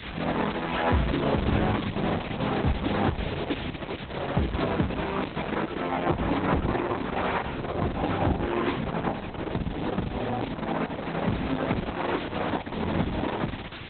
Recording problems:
codec artefacts; AAC, then Opus, log-spectral distance 12 dB, nothing above 4 kHz
background hiss; SNR 13 dB
wind noise; below 210 Hz, SNR 13 dB

